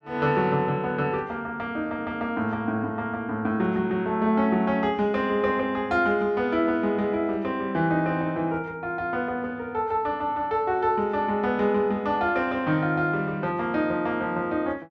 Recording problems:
none

